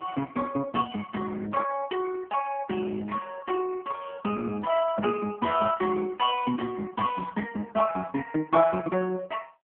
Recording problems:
phone line; 170 Hz to 3 kHz, AMR-NB

